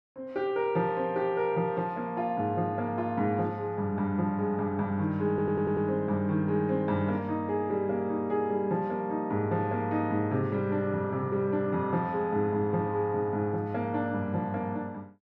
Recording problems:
audio stuttering; at 5.5 s

